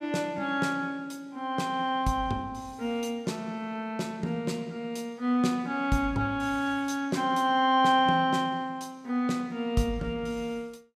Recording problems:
none

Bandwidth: 15.5 kHz